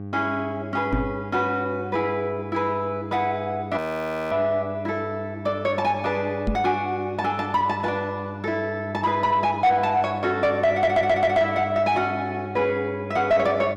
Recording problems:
distortion; soft clipping, signal-to-distortion ratio 12 dB
hum; 50 Hz, harmonics up to 800 Hz, SNR 12 dB
knock on the microphone; at 1 s and at 6.5 s; peak +2 dB vs average level
audio freezing; at 4 s for 0.5 s
audio stuttering; at 11 s

